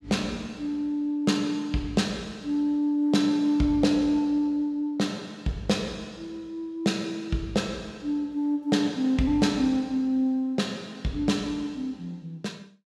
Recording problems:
none

